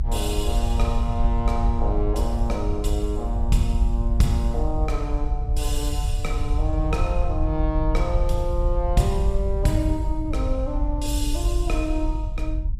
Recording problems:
rumble; below 64 Hz, SNR -1 dB

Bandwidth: 15.5 kHz